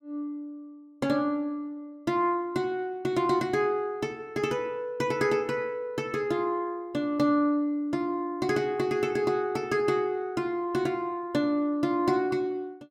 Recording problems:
none

